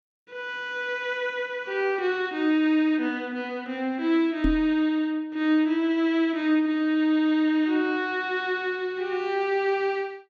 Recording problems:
microphone bump; at 4.5 s; peak +3 dB vs average level

